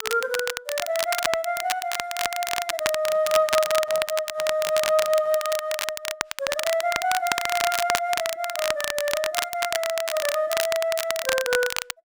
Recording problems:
crackle; vinyl, SNR 3 dB
microphone handling noise; from 3 to 5.5 s; peak -12 dB vs average level

